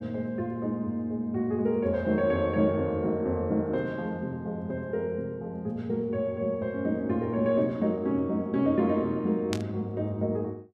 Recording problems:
static burst; at 9.5 s; peak -1 dB vs average level

